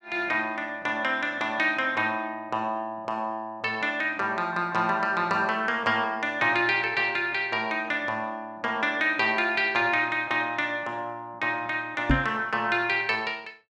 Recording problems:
microphone thump; at 12 s; peak +6 dB vs average level

